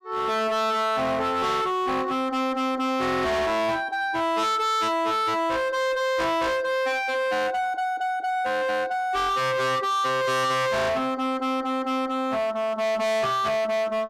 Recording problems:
distorted audio; hard clipping, signal-to-distortion ratio 6 dB

